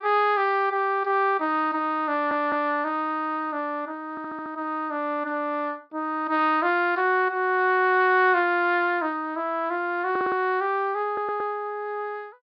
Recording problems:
treble cut off; nothing above 5.5 kHz
audio stuttering; 4 times, first at 2 s

